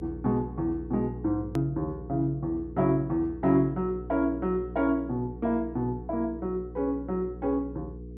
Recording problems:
hum; 60 Hz, harmonics up to 480 Hz, SNR 13 dB
click at an edit; at 1.5 s

